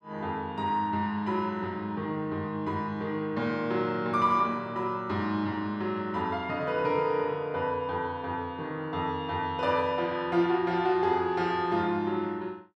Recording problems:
none

